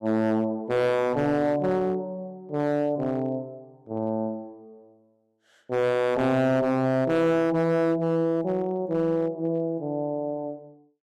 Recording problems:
distorted audio; hard clipping, uneven, signal-to-distortion ratio 7 dB

